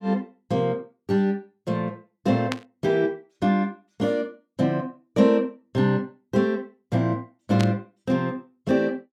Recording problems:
burst of static; at 2.5 s and at 7.5 s; peak 0 dB vs average level

